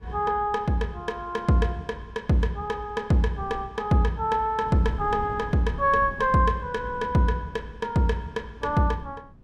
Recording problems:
wind noise; below 200 Hz, SNR 18 dB

